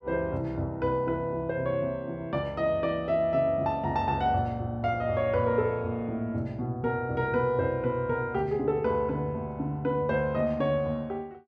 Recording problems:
none

